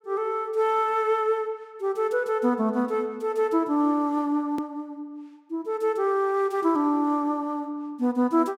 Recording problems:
click at an edit; at 4.5 s

